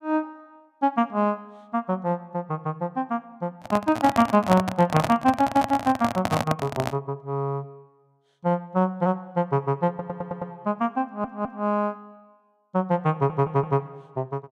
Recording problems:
handling noise; from 3.5 to 7 s; peak +4 dB vs average level
audio stuttering; at 10 s, at 11 s and at 13 s

